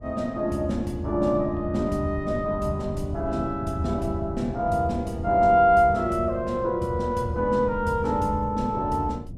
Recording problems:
wind on the microphone; below 160 Hz, SNR 13 dB

